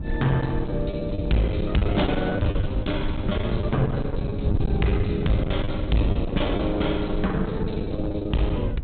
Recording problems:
treble cut off; nothing above 4 kHz
distorted audio; hard clipping, uneven, signal-to-distortion ratio 7 dB
wind noise; below 120 Hz, SNR 5 dB
packet loss; 11% of the sound replaced, filled with the last packet

